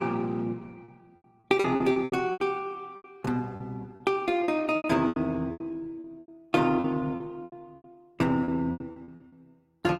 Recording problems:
lossy compression; Opus, log-spectral distance 2 dB, nothing above 16.6 kHz
packet loss; 17% of the sound replaced, filled with repeated pitch periods

